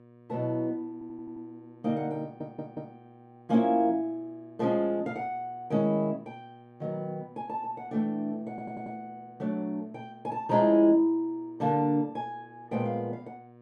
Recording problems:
hum; 60 Hz, harmonics up to 1.8 kHz, SNR 25 dB
stutter; at 1 s, at 2 s and at 8.5 s

